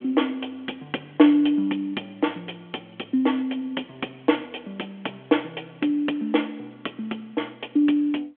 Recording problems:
telephone audio; 240 Hz to 3.4 kHz, G.726

